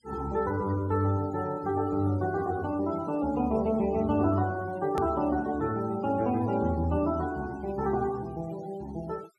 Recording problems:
noise reduction artefacts; signal-to-artefact ratio 22 dB
edit click; at 5 s

